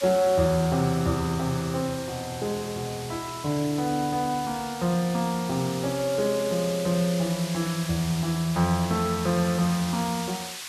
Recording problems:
hiss; SNR 11 dB

